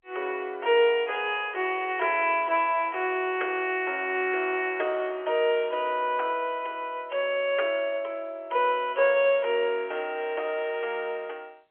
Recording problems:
telephone audio; 340 Hz to 3.3 kHz, G.711

